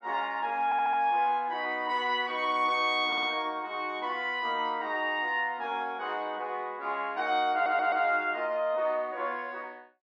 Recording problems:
audio stuttering; at 0.5 s, at 3 s and at 7.5 s

